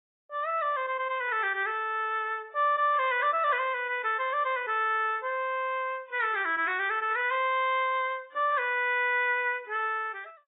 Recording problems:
lossy codec; AAC, log-spectral distance 2 dB, nothing above 3.2 kHz

